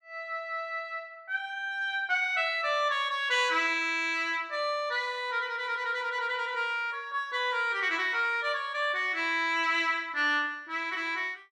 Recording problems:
none

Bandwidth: 14.5 kHz